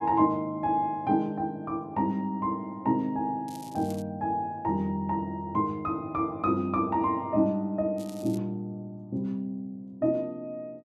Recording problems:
crackle; at 3.5 s and at 8 s; loose cable, SNR 21 dB

